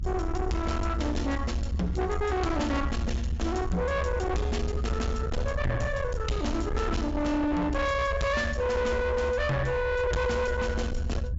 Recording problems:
treble missing; nothing above 8 kHz
distortion; soft clipping, signal-to-distortion ratio 8 dB
low-frequency rumble; below 130 Hz, SNR 3 dB

